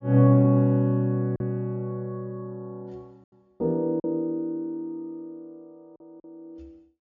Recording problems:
treble cut off; nothing above 7.2 kHz
packet loss; 2% of the sound replaced, filled with silence

